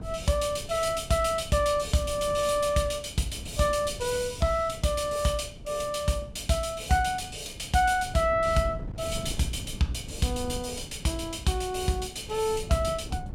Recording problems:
wind noise; below 190 Hz, SNR 14 dB

